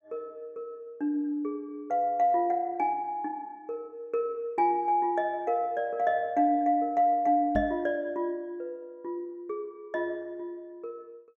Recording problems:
knock on the microphone; at 7.5 s; peak -1 dB vs average level

